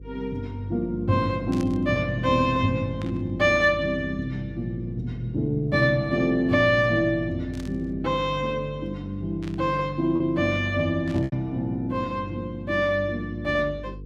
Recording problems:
electrical hum; 50 Hz, harmonics up to 500 Hz, SNR 17 dB
packet loss; 0.9% of the sound replaced, filled with repeated pitch periods
burst of static; 5 times, first at 1.5 s; peak -12 dB vs average level

